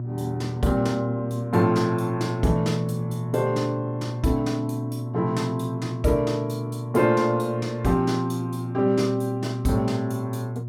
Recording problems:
hum; 60 Hz, harmonics up to 360 Hz, SNR 6 dB

